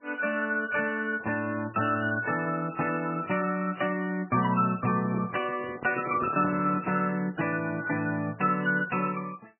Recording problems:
lossy codec; MP3, log-spectral distance 4 dB, nothing above 2.4 kHz
handling noise; from 5 to 7 s; peak -4 dB vs average level

